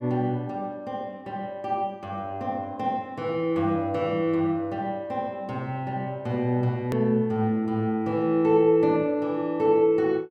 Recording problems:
click at an edit; at 7 s

